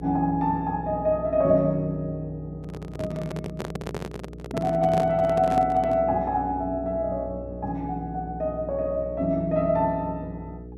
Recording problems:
hum; 60 Hz, harmonics up to 480 Hz, SNR 14 dB
handling noise; from 2.5 to 6 s; peak -1 dB vs average level

